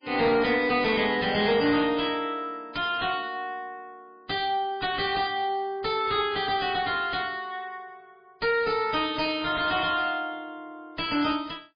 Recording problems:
lossy compression; MP3, log-spectral distance 4 dB, nothing above 4.8 kHz
distorted audio; soft clipping, signal-to-distortion ratio 9 dB

